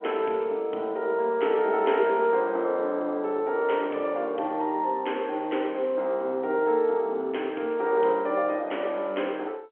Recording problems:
telephone audio; 280 Hz to 3.4 kHz, G.711

